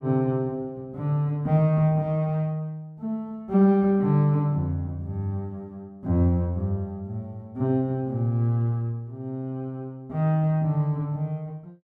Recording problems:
none

